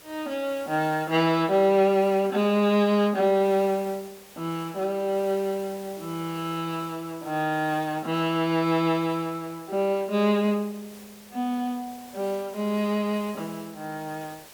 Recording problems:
background hiss; SNR 21 dB

